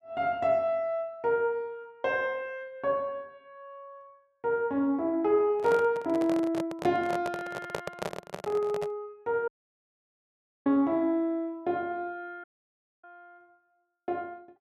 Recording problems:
handling noise; from 5.5 to 9 s; peak 0 dB vs average level
audio cutting out; at 9.5 s for 1 s and at 12 s for 0.5 s

